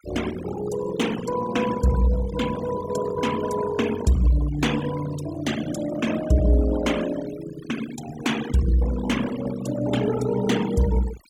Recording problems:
noise reduction artefacts; signal-to-artefact ratio 12 dB

